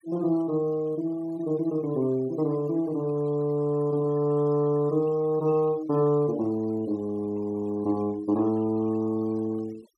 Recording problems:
denoising artefacts; signal-to-artefact ratio 24 dB

